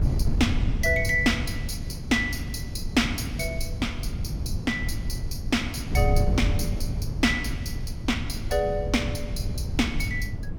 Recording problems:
wind on the microphone; below 120 Hz, SNR 3 dB

